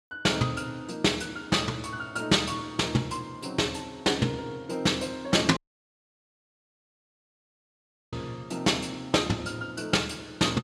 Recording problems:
dropout; at 5.5 s for 2.5 s

